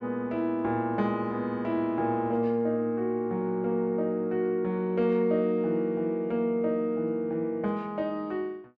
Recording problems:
none

